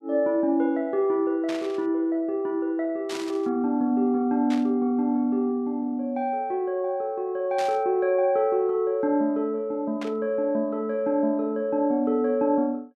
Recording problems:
burst of static; 5 times, first at 1.5 s; peak -8 dB vs average level

